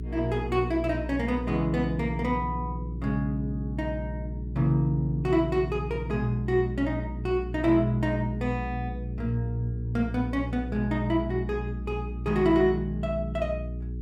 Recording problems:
hum; 60 Hz, harmonics up to 420 Hz, SNR 7 dB

